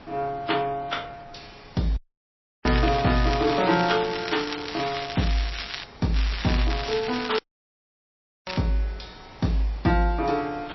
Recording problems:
codec artefacts; MP3, log-spectral distance 8 dB, nothing above 5.7 kHz
wind noise; below 1.4 kHz, SNR 20 dB
dropout; at 2 s for 0.5 s and at 7.5 s for 1 s
crackling; from 2.5 to 6 s and from 6 to 8.5 s; loose cable, SNR 7 dB

